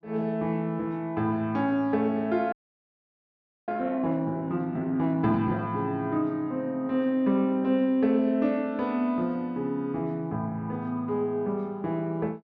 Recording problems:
frozen audio; at 2.5 s for 1 s

